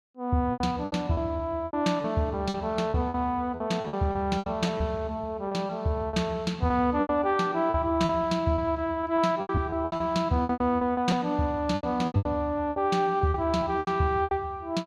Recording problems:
lost packets; 14% of the sound replaced, filled with repeated pitch periods

